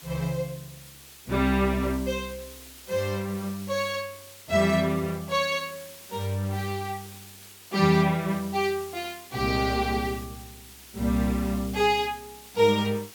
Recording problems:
hiss; SNR 18 dB

